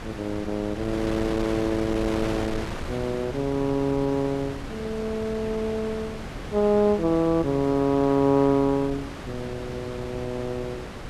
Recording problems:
wind on the microphone; below 1.1 kHz, SNR 10 dB

